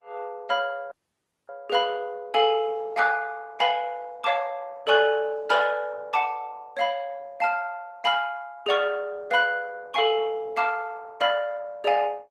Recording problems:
lossy compression; Opus, then Opus, log-spectral distance 3 dB, nothing above 16.1 kHz
audio cutting out; at 1 s for 0.5 s

